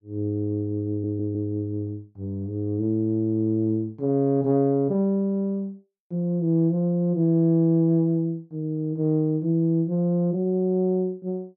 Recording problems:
audio stuttering; at 1 s

